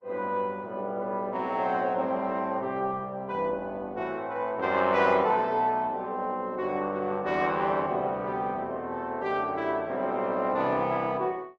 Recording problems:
codec artefacts; Opus, log-spectral distance 2 dB

